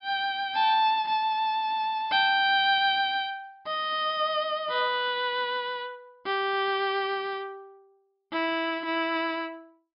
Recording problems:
low-pass filter; nothing above 5.5 kHz

